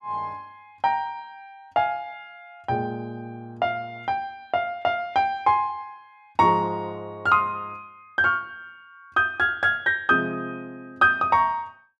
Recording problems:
none

